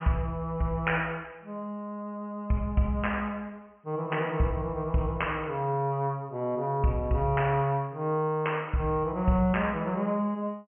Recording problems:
treble missing; nothing above 3 kHz

